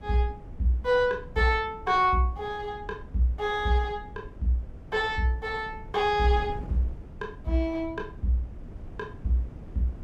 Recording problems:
wind on the microphone; below 150 Hz, SNR 16 dB

